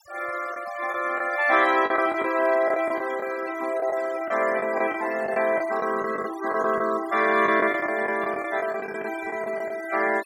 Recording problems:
denoising artefacts; signal-to-artefact ratio 14 dB
lost packets; 9% of the sound replaced, filled with the last packet

